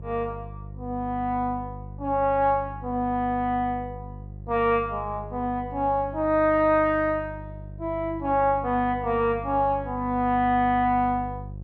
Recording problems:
hum; 50 Hz, harmonics up to 550 Hz, SNR 14 dB

